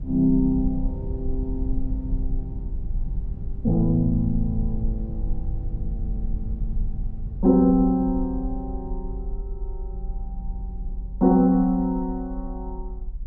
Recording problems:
low-frequency rumble; below 54 Hz, SNR 9 dB

